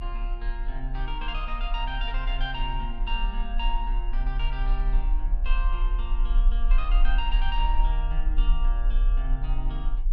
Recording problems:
low-frequency rumble; below 36 Hz, strongest tone 34 Hz, SNR -7 dB

